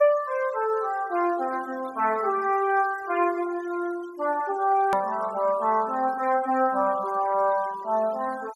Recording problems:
noise reduction artefacts; signal-to-artefact ratio 21 dB
edit click; at 5 s

